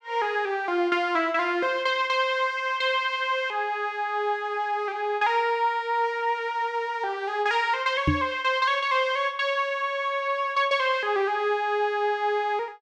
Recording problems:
microphone bump; at 8 s; peak +6 dB vs average level

